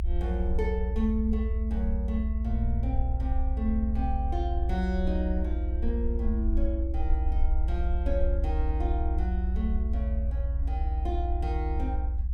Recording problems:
rumble; below 60 Hz, strongest tone 58 Hz, SNR -4 dB

